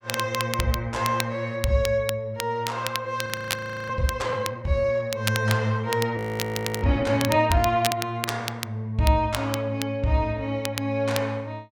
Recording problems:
crackle; vinyl, SNR 8 dB
frozen audio; at 3.5 s for 0.5 s and at 6 s for 0.5 s

